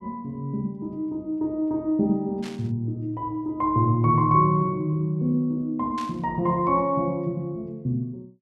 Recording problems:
burst of static; at 2.5 s and at 6 s; peak -11 dB vs average level

